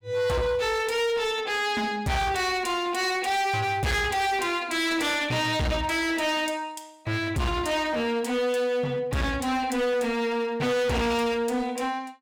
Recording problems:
distorted audio; hard clipping, uneven, signal-to-distortion ratio 6 dB

